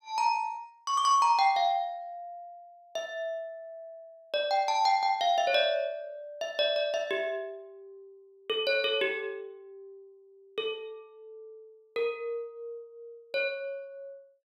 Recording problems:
none

